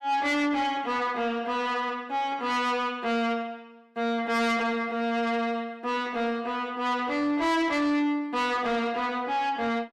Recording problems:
distortion; soft clipping, signal-to-distortion ratio 10 dB

